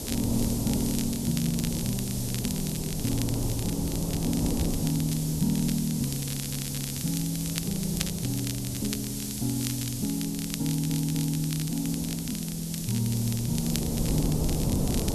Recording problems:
hiss; slope +5 dB per octave, SNR 5 dB
wind noise; below 320 Hz, SNR 6 dB
crackle; vinyl, SNR 9 dB
stutter; at 6.5 s and at 11 s

